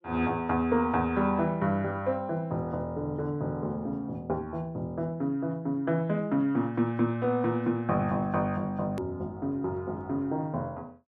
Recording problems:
edit click; at 9 s

